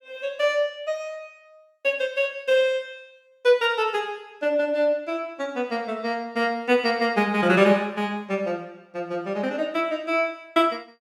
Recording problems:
none

